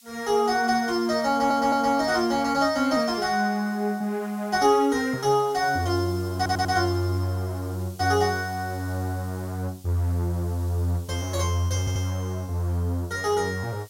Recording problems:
background hiss; slope +6 dB per octave, SNR 24 dB
audio stuttering; at 1.5 s, at 6.5 s and at 12 s

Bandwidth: 16 kHz